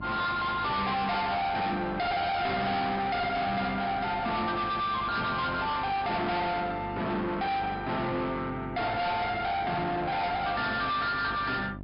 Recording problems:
low-pass filter; nothing above 5.2 kHz
lossy compression; MP3, log-spectral distance 2 dB
distorted audio; soft clipping, signal-to-distortion ratio 6 dB
hum; 50 Hz, harmonics up to 1.6 kHz, SNR 14 dB

